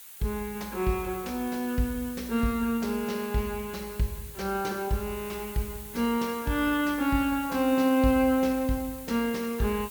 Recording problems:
background hiss; SNR 14 dB

